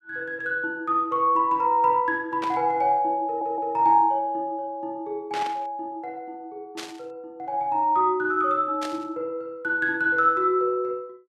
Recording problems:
static burst; 4 times, first at 2.5 s; peak -7 dB vs average level
audio stuttering; at 3.5 s

